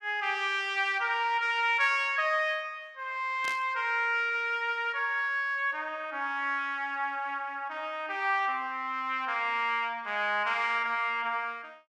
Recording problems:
burst of static; at 3.5 s; peak -6 dB vs average level

